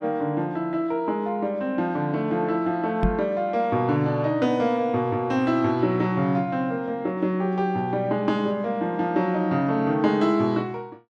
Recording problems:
microphone bump; at 3 s; peak +4 dB vs average level

